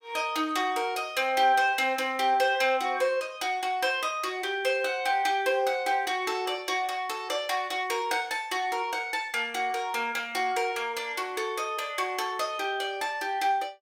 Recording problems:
none

